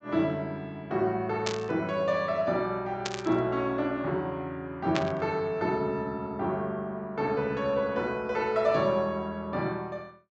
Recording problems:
treble missing; nothing above 8 kHz
burst of static; at 1.5 s, at 3 s and at 5 s; peak +2 dB vs average level

